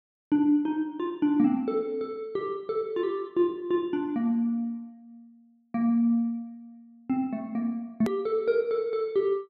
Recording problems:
edit click; at 8 s

